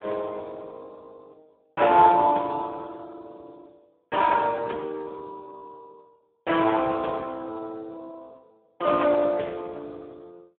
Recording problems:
phone line; 260 Hz to 2.2 kHz, Speex

